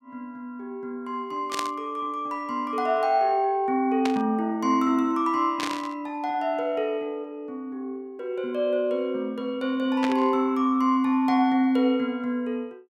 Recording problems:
burst of static; 4 times, first at 1.5 s; peak -1 dB vs average level

